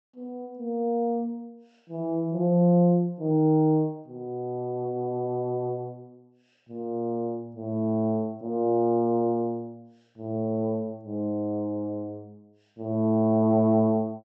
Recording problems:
treble missing; nothing above 8 kHz

